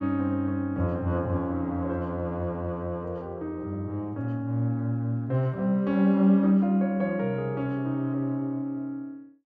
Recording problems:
none

